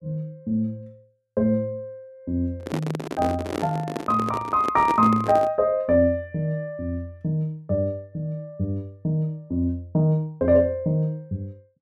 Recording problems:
handling noise; from 2.5 to 5.5 s; peak 0 dB vs average level

